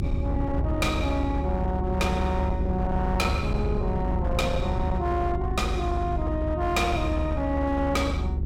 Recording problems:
distortion; hard clipping, signal-to-distortion ratio 11 dB
mains hum; 50 Hz, harmonics up to 400 Hz, SNR 5 dB
low-frequency rumble; below 100 Hz, strongest tone 70 Hz, SNR 2 dB

